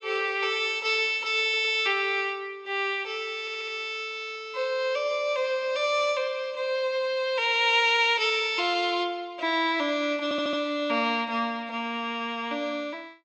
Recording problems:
treble missing; nothing above 8 kHz
audio stuttering; at 1.5 s, at 3.5 s and at 10 s

